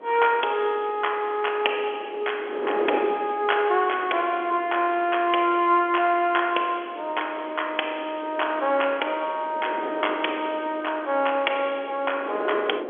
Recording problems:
phone line; 300 Hz to 3.4 kHz, G.711
wind noise; below 670 Hz, SNR 13 dB

